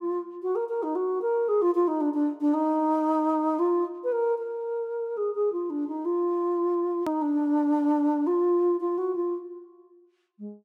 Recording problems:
click at an edit; at 7 s

